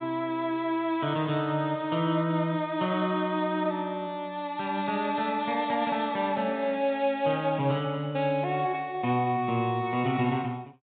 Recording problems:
low-pass filter; nothing above 4 kHz

